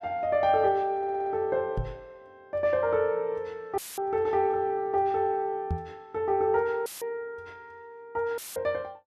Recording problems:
audio stuttering; at 1 s
microphone thump; at 2 s and at 5.5 s; peak +1 dB vs average level
audio cutting out; at 4 s, at 7 s and at 8.5 s; filled with static

